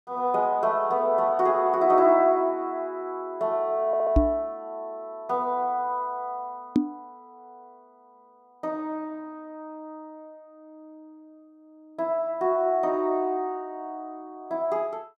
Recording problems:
stutter; at 4 s
microphone thump; at 4 s and at 7 s; peak +7 dB vs average level

